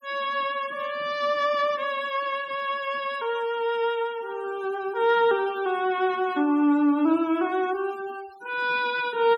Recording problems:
noise reduction artefacts; signal-to-artefact ratio 21 dB

